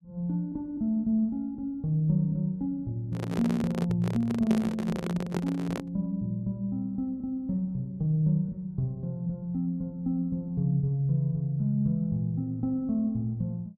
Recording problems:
handling noise; from 3 to 6 s; peak +2 dB vs average level

